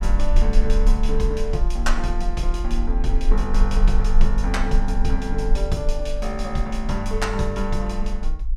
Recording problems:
low-frequency rumble; below 38 Hz, strongest tone 20 Hz, SNR -2 dB

